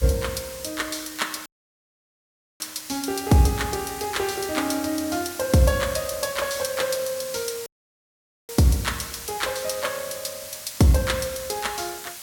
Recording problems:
hiss; slope +2 dB per octave, SNR 11 dB
dropout; at 1.5 s for 1 s and at 7.5 s for 1 s

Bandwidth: 17 kHz